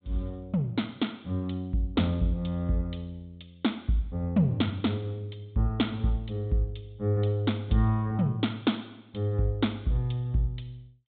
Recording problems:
low-pass filter; nothing above 4 kHz

